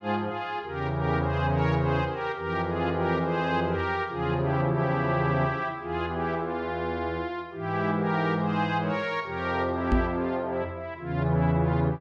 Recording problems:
microphone thump; at 10 s; peak +7 dB vs average level

